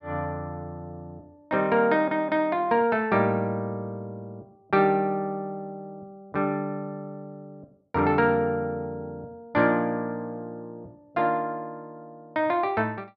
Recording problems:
none

